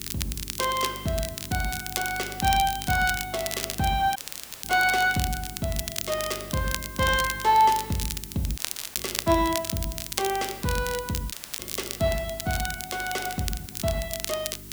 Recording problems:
mains hum; 50 Hz, harmonics up to 400 Hz, SNR 18 dB
background hiss; slope +3 dB per octave, SNR 16 dB
crackle; vinyl, SNR 6 dB
dropout; at 4 s, at 8.5 s and at 11 s

